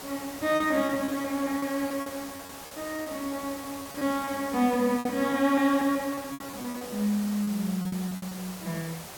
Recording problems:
background hiss; SNR 12 dB
packet loss; 12% of the sound replaced, filled with repeated pitch periods

